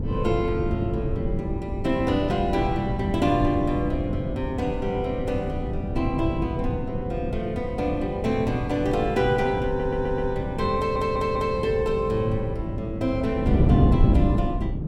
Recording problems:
wind noise; below 210 Hz, SNR 2 dB
stutter; at 9.5 s and at 11 s

